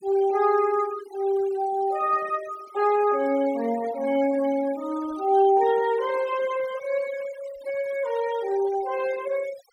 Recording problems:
noise reduction artefacts; signal-to-artefact ratio 18 dB

